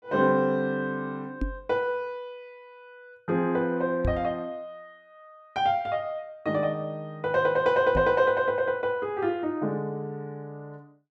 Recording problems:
knock on the microphone; at 1.5 s, at 4 s and at 8 s; peak +1 dB vs average level

